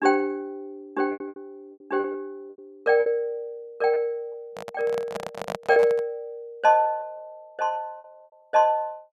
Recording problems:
packet loss; 8% of the sound replaced, filled with repeated pitch periods
microphone handling noise; from 4.5 to 6 s; peak -3 dB vs average level

